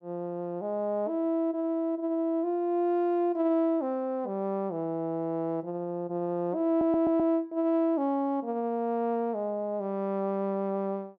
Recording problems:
stutter; at 6.5 s

